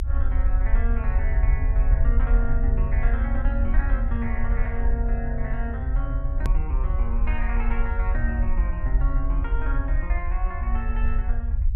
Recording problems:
low-frequency rumble; below 54 Hz, SNR -8 dB
hard cut with a click; at 6.5 s

